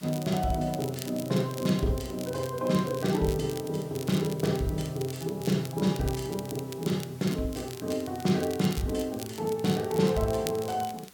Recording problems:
background hiss; slope -2 dB per octave, SNR 23 dB
crackling; vinyl, SNR 15 dB

